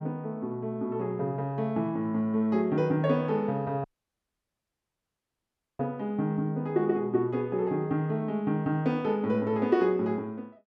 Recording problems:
audio cutting out; at 4 s for 2 s

